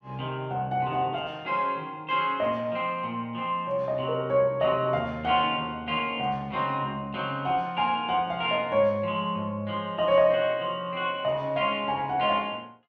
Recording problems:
none

